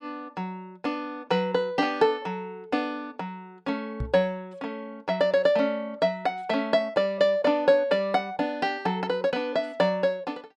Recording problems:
knock on the microphone; at 4 s; peak -2 dB vs average level

